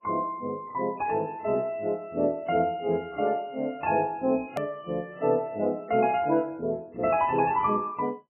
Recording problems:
lossy compression; MP3, log-spectral distance 2 dB, nothing above 2.5 kHz
edit click; at 4.5 s

